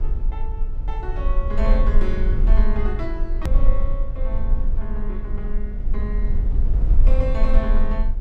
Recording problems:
low-frequency rumble; below 42 Hz, strongest tone 22 Hz, SNR -8 dB
click at an edit; at 3.5 s

